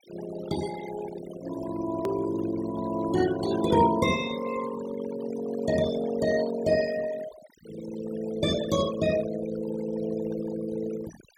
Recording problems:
denoising artefacts; signal-to-artefact ratio 12 dB
edit click; at 2 s

